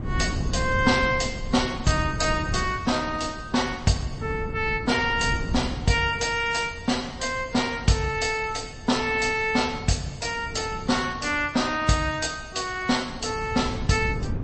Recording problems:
codec artefacts; MP3, log-spectral distance 4 dB, nothing above 8.2 kHz
wind on the microphone; below 180 Hz, SNR 10 dB

